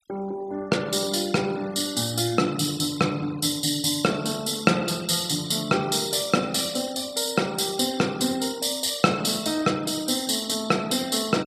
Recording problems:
noise reduction artefacts; signal-to-artefact ratio 21 dB

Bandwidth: 14.5 kHz